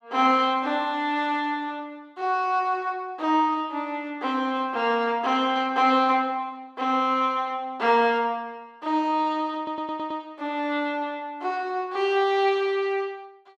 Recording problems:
stutter; at 9.5 s

